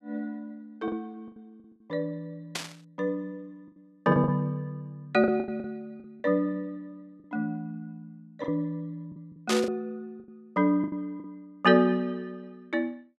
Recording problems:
packet loss; 7% of the sound replaced, filled with the last packet
burst of static; at 2.5 s and at 9.5 s; peak +3 dB vs average level

